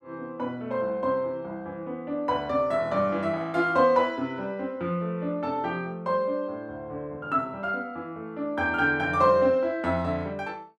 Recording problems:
none

